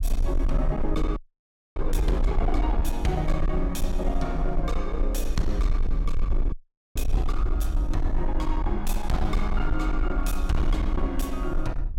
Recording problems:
distorted audio; hard clipping, signal-to-distortion ratio 12 dB
low-frequency rumble; below 46 Hz, strongest tone 24 Hz, SNR -1 dB
audio freezing; at 1 s for 0.5 s and at 6.5 s

